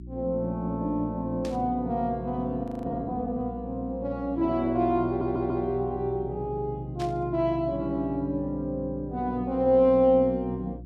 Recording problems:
electrical hum; 60 Hz, harmonics up to 360 Hz, SNR 15 dB
static burst; at 1.5 s and at 7 s; peak -10 dB vs average level
frozen audio; at 2.5 s
audio stuttering; at 5 s

